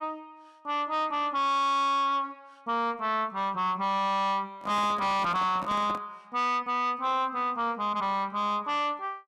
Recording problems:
distortion; soft clipping, signal-to-distortion ratio 7 dB
handling noise; from 4.5 to 6 s; peak -6 dB vs average level

